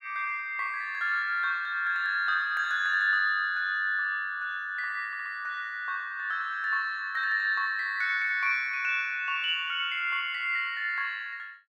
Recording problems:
stutter; at 5 s

